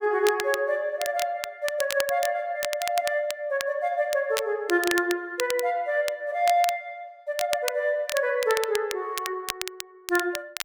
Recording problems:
crackling; vinyl, SNR 9 dB

